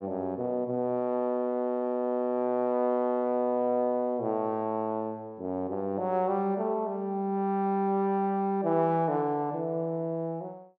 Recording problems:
none

